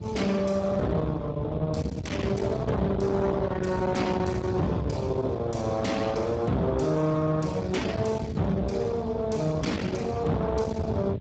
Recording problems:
lossy codec; Speex, log-spectral distance 3 dB, nothing above 7.6 kHz
distorted audio; soft clipping, signal-to-distortion ratio 7 dB
rumble; below 460 Hz, SNR 6 dB

